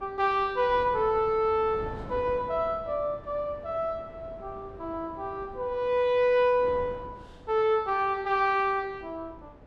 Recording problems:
wind on the microphone; below 540 Hz, SNR 19 dB

